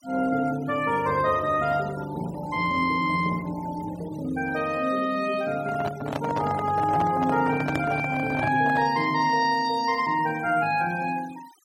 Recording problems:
denoising artefacts; signal-to-artefact ratio 20 dB
handling noise; from 5.5 to 9 s; peak -1 dB vs average level

